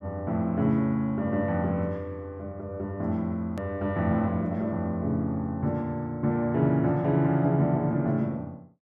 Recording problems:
click at an edit; at 3.5 s

